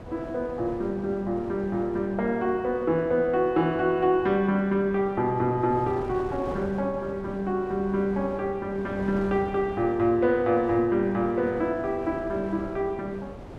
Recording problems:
wind noise; below 610 Hz, SNR 15 dB

